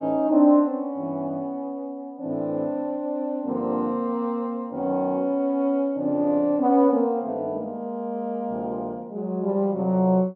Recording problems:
none

